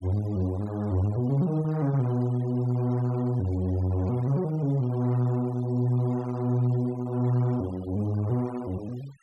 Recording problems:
noise reduction artefacts; signal-to-artefact ratio 24 dB

